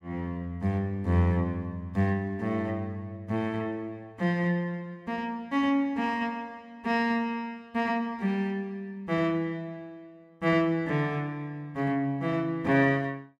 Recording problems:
none

